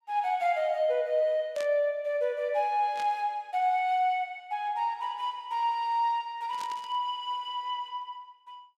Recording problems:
burst of static; at 1.5 s, at 3 s and at 6.5 s; peak -9 dB vs average level

